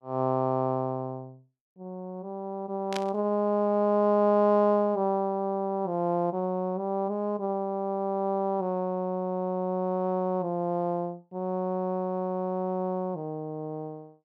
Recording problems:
static burst; at 3 s; peak -2 dB vs average level

